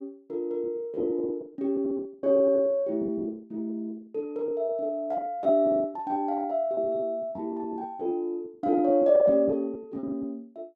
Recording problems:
packet loss; 14% of the sound replaced, filled with repeated pitch periods

